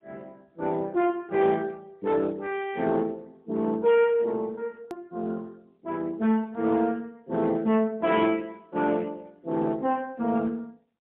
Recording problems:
telephone audio; 130 Hz to 3.5 kHz, AMR-NB, then MP3
distorted audio; hard clipping, uneven, signal-to-distortion ratio 11 dB
edit click; at 5 s

